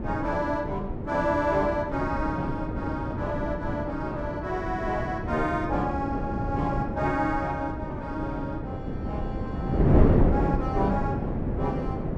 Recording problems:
wind noise; below 340 Hz, SNR 0 dB

